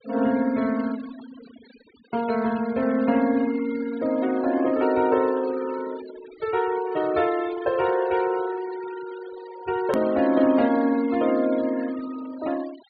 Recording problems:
treble missing; nothing above 4.7 kHz
denoising artefacts; signal-to-artefact ratio 19 dB
click at an edit; at 10 s

